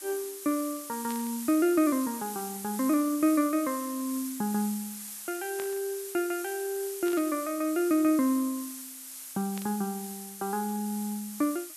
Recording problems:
hiss; slope +3 dB per octave, SNR 10 dB
static burst; 4 times, first at 1 s; peak -9 dB vs average level

